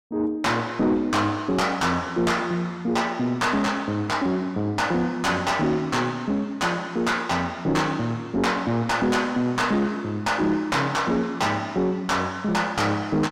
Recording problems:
distorted audio; soft clipping, signal-to-distortion ratio 10 dB

